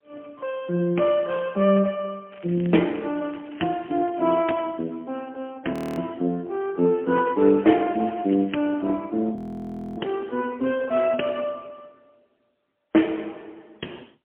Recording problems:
phone line; 190 Hz to 3.2 kHz, AMR-NB, then MP3
crackling; from 2.5 to 4.5 s and at 7.5 s; loose cable, SNR 25 dB
audio freezing; at 5.5 s and at 9.5 s for 0.5 s

